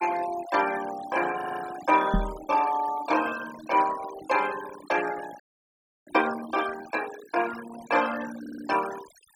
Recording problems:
denoising artefacts; signal-to-artefact ratio 13 dB
stutter; at 1.5 s and at 8.5 s
microphone thump; at 2 s; peak +5 dB vs average level
audio freezing; at 5.5 s for 0.5 s

